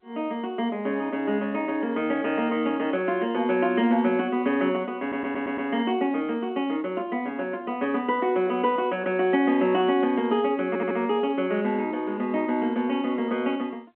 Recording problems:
phone line; 220 Hz to 3.3 kHz, G.711
stutter; at 5 s and at 11 s

